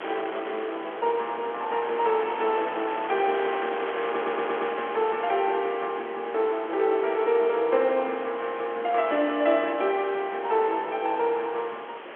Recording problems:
phone line; 280 Hz to 3.4 kHz, G.711
wind noise; below 2 kHz, SNR 11 dB
stutter; at 4 s

